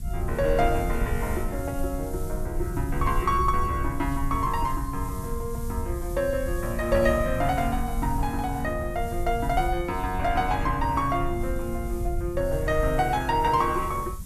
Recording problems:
background hiss; SNR 19 dB
low-frequency rumble; below 82 Hz, SNR 6 dB

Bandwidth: 13.5 kHz